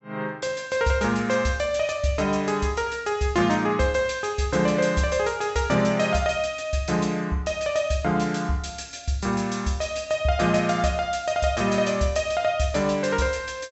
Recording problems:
treble cut off; nothing above 7.6 kHz

